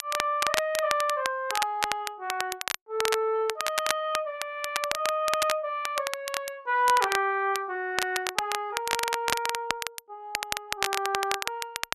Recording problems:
crackle; vinyl, SNR 3 dB

